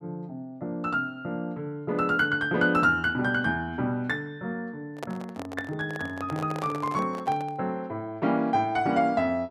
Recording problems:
handling noise; from 5 to 7.5 s; peak -4 dB vs average level

